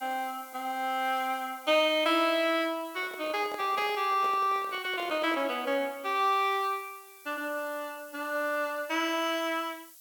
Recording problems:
background hiss; slope +6 dB per octave, SNR 21 dB
handling noise; from 3 to 5.5 s; peak -8 dB vs average level

